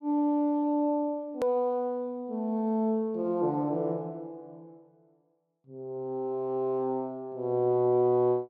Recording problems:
edit click; at 1.5 s

